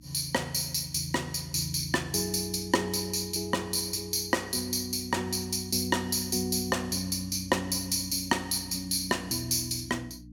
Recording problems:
electrical hum; 60 Hz, harmonics up to 300 Hz, SNR 22 dB

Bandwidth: 17 kHz